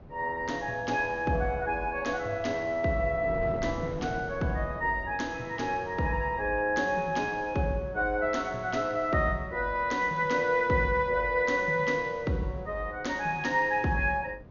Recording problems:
treble cut off; nothing above 6.8 kHz
wind on the microphone; below 390 Hz, SNR 18 dB

